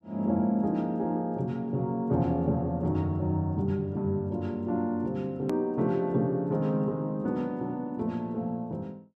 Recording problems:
edit click; at 5.5 s

